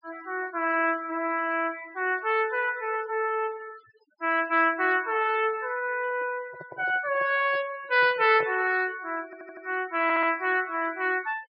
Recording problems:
low-pass filter; nothing above 5.5 kHz
denoising artefacts; signal-to-artefact ratio 20 dB
microphone handling noise; from 6 to 8.5 s; peak -9 dB vs average level
audio stuttering; at 9.5 s and at 10 s

